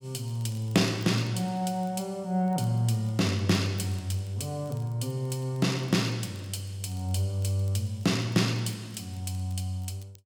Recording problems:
crackling; vinyl, SNR 29 dB

